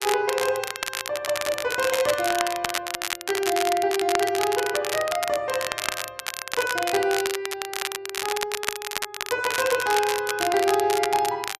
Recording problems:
crackling; vinyl, SNR 4 dB

